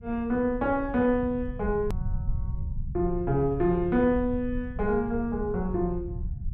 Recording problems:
low-frequency rumble; below 100 Hz, SNR 9 dB
click at an edit; at 2 s

